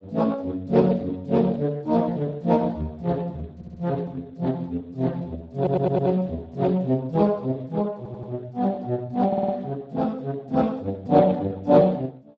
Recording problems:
lossy compression; Speex, log-spectral distance 3 dB
audio stuttering; 4 times, first at 3.5 s

